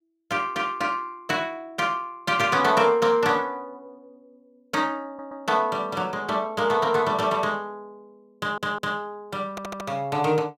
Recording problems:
stutter; at 5 s, at 8.5 s and at 9.5 s

